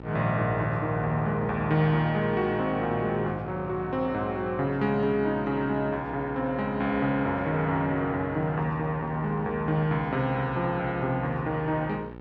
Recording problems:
hum; 60 Hz, harmonics up to 1.9 kHz, SNR 15 dB

